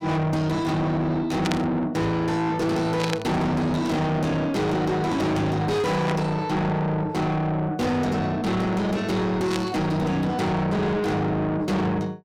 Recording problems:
distorted audio; soft clipping, signal-to-distortion ratio 7 dB
burst of static; 4 times, first at 1.5 s; peak 0 dB vs average level

